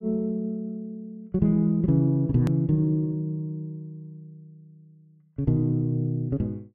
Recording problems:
click at an edit; at 2.5 s

